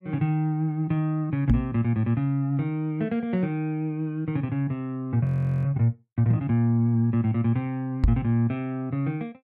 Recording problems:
knock on the microphone; at 1.5 s and at 8 s; peak +8 dB vs average level
frozen audio; at 5.5 s

